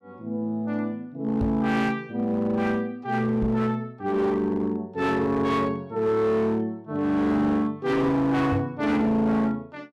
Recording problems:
distortion; hard clipping, signal-to-distortion ratio 11 dB
microphone thump; at 1.5 s, at 3.5 s and at 8.5 s; peak +1 dB vs average level

